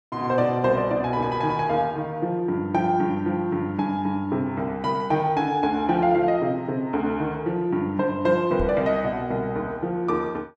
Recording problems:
microphone bump; at 8.5 s; peak -3 dB vs average level

